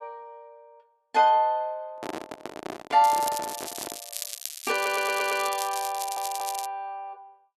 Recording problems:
microphone handling noise; from 2 to 4 s; peak -4 dB vs average level
crackle; from 3 to 6.5 s; loose cable, SNR 9 dB
audio stuttering; at 4.5 s and at 6 s

